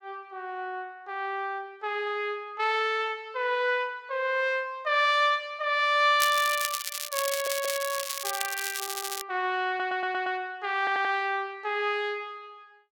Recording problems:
crackle; from 6 to 9 s; loose cable, SNR 4 dB
stutter; 4 times, first at 7.5 s

